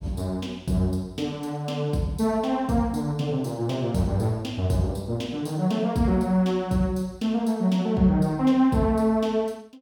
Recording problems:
none

